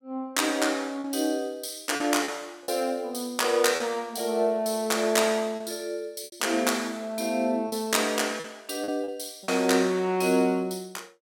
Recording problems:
lost packets; 5% of the sound replaced, filled with repeated pitch periods

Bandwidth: 18 kHz